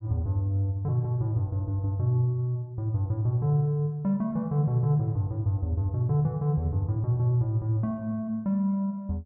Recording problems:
none

